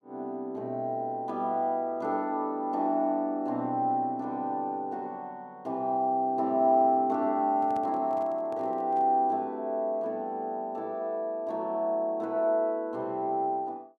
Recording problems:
microphone handling noise; from 7.5 to 9 s; peak -12 dB vs average level

